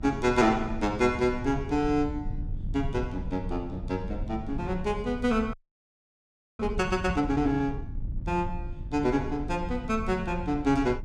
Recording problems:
electrical hum; 50 Hz, harmonics up to 950 Hz, SNR 21 dB
rumble; below 96 Hz, SNR 10 dB
audio freezing; at 5.5 s for 1 s

